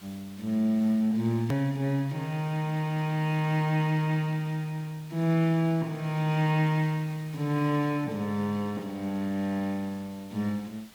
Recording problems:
background hiss; slope -1 dB per octave, SNR 24 dB
hard cut with a click; at 1.5 s

